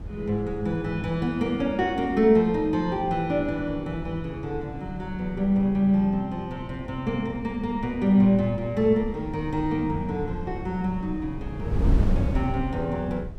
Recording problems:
wind noise; below 140 Hz, SNR 9 dB

